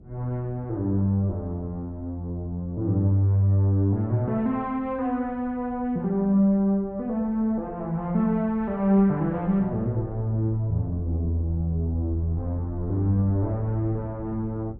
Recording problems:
wind noise; below 140 Hz, SNR 19 dB

